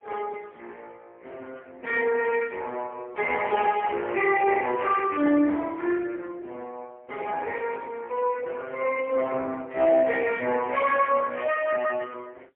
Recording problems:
phone line; 260 Hz to 3.2 kHz, AMR-NB, then MP3

